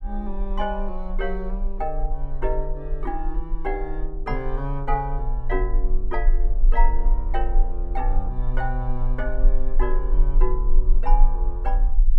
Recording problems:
rumble; below 32 Hz, strongest tone 20 Hz, SNR -4 dB

